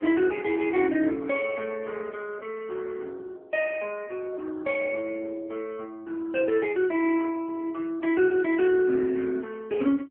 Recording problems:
phone line; 240 Hz to 3.3 kHz, AMR-NB

